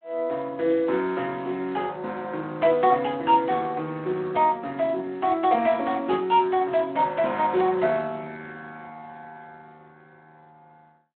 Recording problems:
phone line; 240 Hz to 3.3 kHz, Speex

